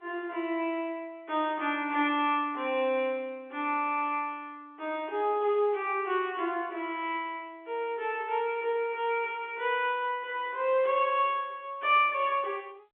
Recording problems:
telephone audio; 300 Hz to 3.4 kHz, G.711

